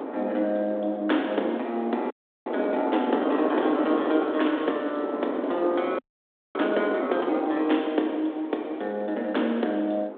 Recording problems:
phone line; 240 Hz to 3.6 kHz, G.726
wind noise; below 670 Hz, SNR 4 dB
frozen audio; at 2 s and at 6 s for 0.5 s

